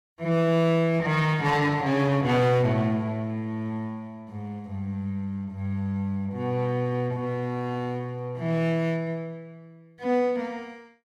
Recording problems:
distortion; hard clipping, uneven, signal-to-distortion ratio 11 dB

